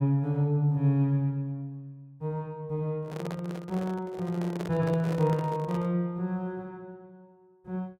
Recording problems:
handling noise; from 3 to 6 s; peak -4 dB vs average level

